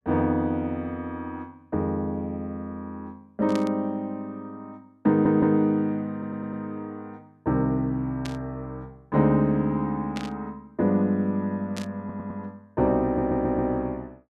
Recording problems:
burst of static; 4 times, first at 3.5 s; peak -6 dB vs average level
stutter; 4 times, first at 5 s

